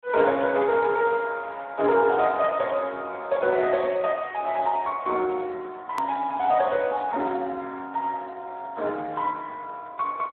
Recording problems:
phone line; 320 Hz to 3.4 kHz, Speex
hard cut with a click; at 6 s

